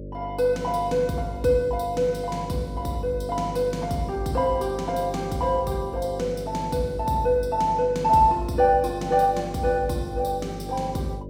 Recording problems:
electrical hum; 50 Hz, harmonics up to 600 Hz, SNR 12 dB

